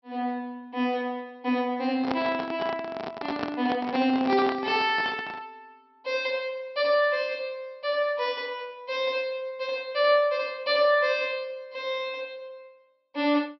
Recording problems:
treble missing; nothing above 5.7 kHz
handling noise; from 2 to 5.5 s; peak +1 dB vs average level

